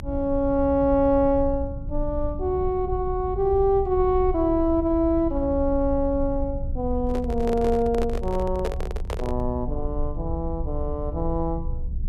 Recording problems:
rumble; below 70 Hz, strongest tone 24 Hz, SNR 8 dB
microphone handling noise; from 7 to 9.5 s; peak -1 dB vs average level

